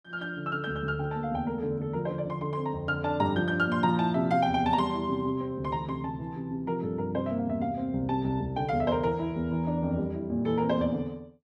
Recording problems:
none

